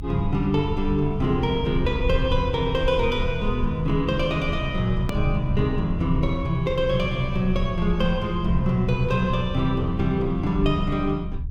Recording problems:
rumble; below 72 Hz, strongest tone 24 Hz, SNR 7 dB
hard cut with a click; at 5 s

